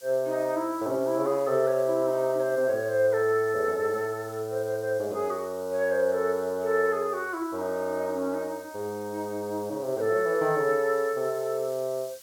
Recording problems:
background hiss; SNR 22 dB

